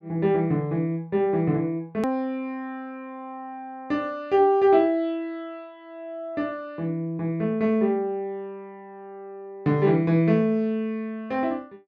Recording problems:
edit click; at 2 s

